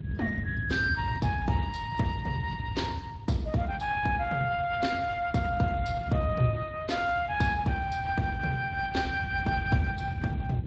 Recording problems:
codec artefacts; Speex, then MP3, log-spectral distance 3 dB
wind on the microphone; below 150 Hz, SNR 7 dB

